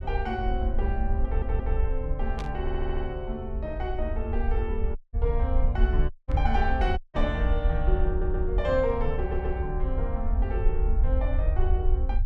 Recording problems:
low-frequency rumble; below 62 Hz, SNR -3 dB
audio stuttering; 4 times, first at 1.5 s
static burst; at 2.5 s and at 6.5 s; peak -5 dB vs average level
dropout; at 5 s, at 6 s and at 7 s

